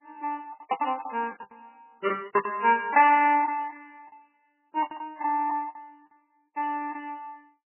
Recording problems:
codec artefacts; MP3, log-spectral distance 3 dB, nothing above 2.7 kHz
lost packets; 16% of the sound replaced, filled with the last packet

